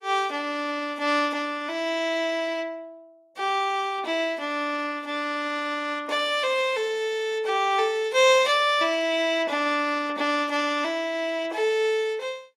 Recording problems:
lossy compression; AAC, log-spectral distance 2 dB, nothing above 14.7 kHz

